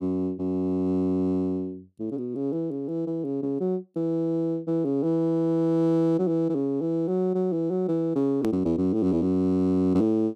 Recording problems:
hard cut with a click; at 8.5 s

